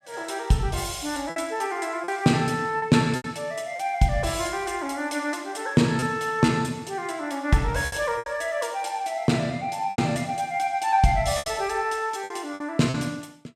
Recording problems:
packet loss; 6% of the sound replaced, filled with repeated pitch periods

